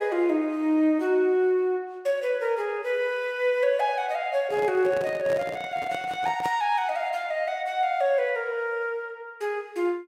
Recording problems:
microphone handling noise; from 4.5 to 6.5 s; peak -6 dB vs average level

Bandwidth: 16 kHz